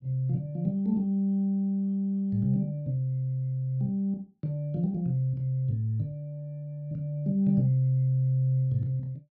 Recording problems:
none

